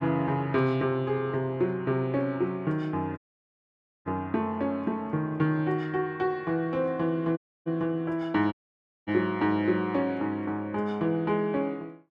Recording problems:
dropout; at 3 s for 1 s, at 7.5 s and at 8.5 s for 0.5 s

